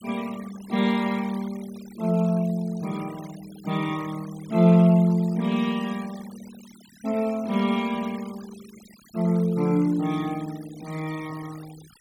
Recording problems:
denoising artefacts; signal-to-artefact ratio 22 dB

